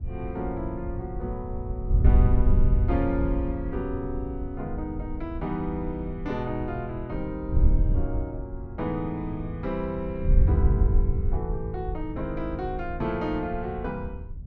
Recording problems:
wind on the microphone; below 84 Hz, SNR -3 dB

